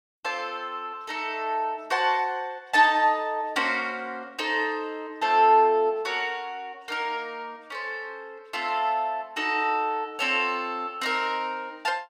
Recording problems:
none

